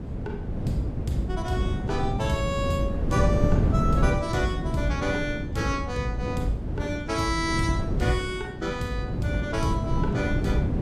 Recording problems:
wind noise; below 220 Hz, SNR 0 dB

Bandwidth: 14.5 kHz